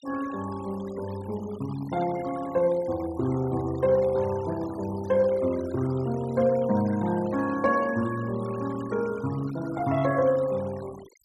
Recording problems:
noise reduction artefacts; signal-to-artefact ratio 19 dB

